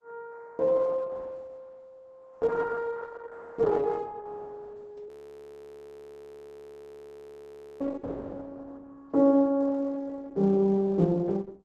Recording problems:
lossy compression; Opus, log-spectral distance 3 dB, nothing above 13.1 kHz
frozen audio; at 5 s for 2.5 s

